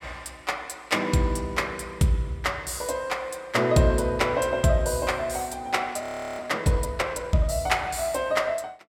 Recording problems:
frozen audio; at 6 s

